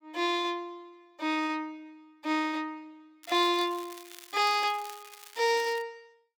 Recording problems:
crackling; from 3 to 6 s; loose cable, SNR 18 dB

